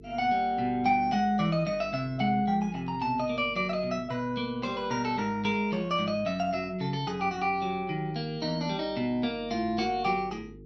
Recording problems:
hum; 50 Hz, harmonics up to 450 Hz, SNR 22 dB

